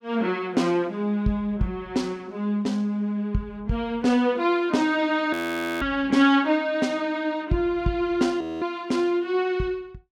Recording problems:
audio freezing; at 5.5 s and at 8.5 s

